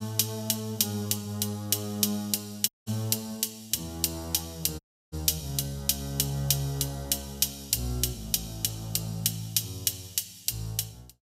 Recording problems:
dropout; at 2.5 s and at 5 s

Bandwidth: 15.5 kHz